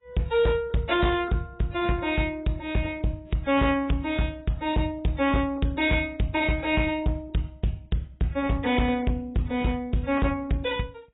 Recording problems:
lossy codec; AAC, log-spectral distance 2 dB, nothing above 3.5 kHz
distortion; hard clipping, signal-to-distortion ratio 10 dB

